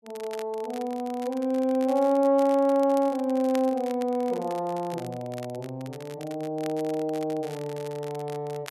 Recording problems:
crackle; vinyl, SNR 20 dB

